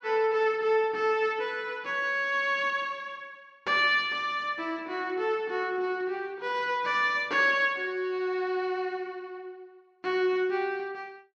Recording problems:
none

